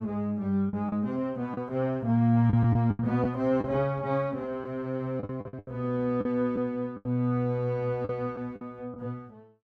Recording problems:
lost packets; 8% of the sound replaced, filled with the last packet

